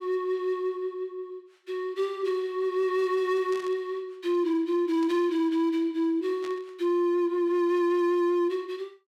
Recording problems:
distortion; hard clipping, signal-to-distortion ratio 12 dB
static burst; at 3.5 s, at 5 s and at 6.5 s; peak -13 dB vs average level

